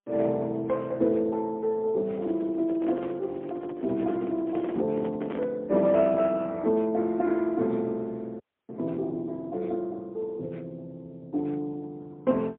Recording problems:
telephone audio; 150 Hz to 3.5 kHz, AMR-NB, then MP3
microphone handling noise; from 2 to 5.5 s; peak -5 dB vs average level
audio freezing; at 8.5 s

